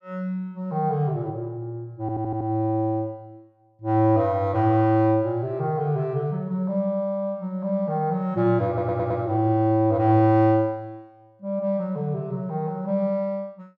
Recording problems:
stutter; at 2 s and at 8.5 s

